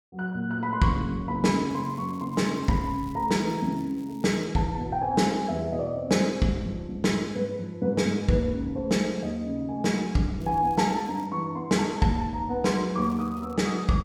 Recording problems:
crackle; from 1.5 to 4.5 s, at 10 s and at 13 s; loose cable, SNR 29 dB

